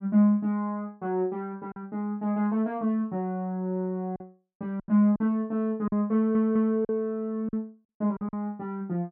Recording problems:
lost packets; 5% of the sound replaced, filled with silence
stutter; at 6 s

